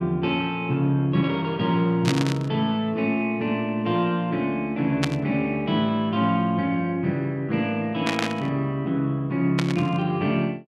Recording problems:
burst of static; 4 times, first at 2 s; peak +2 dB vs average level

